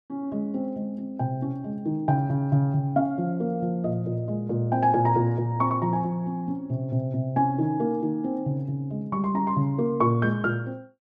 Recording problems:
none

